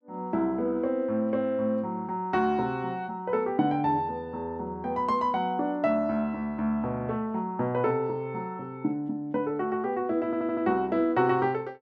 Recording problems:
stutter; at 10 s

